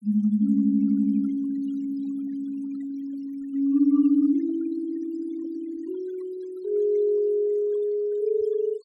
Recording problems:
noise reduction artefacts; signal-to-artefact ratio 24 dB

